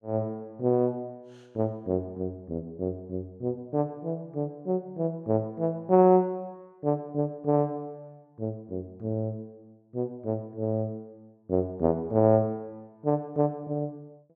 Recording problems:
none

